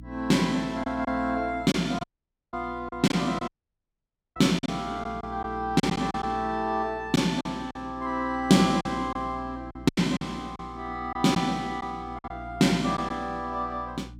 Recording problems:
electrical hum; 60 Hz, harmonics up to 300 Hz, SNR 18 dB
lost packets; 7% of the sound replaced, filled with silence
dropout; at 2 s and at 3.5 s for 1 s

